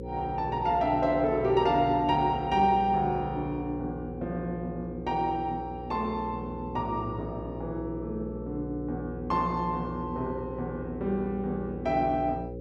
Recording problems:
mains hum; 60 Hz, harmonics up to 540 Hz, SNR 9 dB

